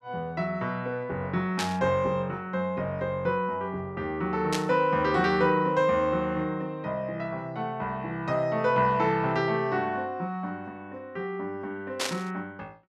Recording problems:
burst of static; at 1.5 s, at 4.5 s and at 12 s; peak +3 dB vs average level

